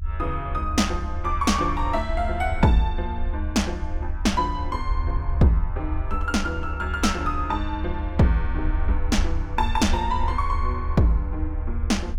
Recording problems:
low-frequency rumble; below 74 Hz, SNR 4 dB

